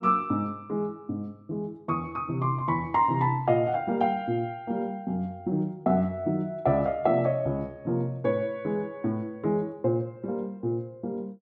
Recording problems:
none

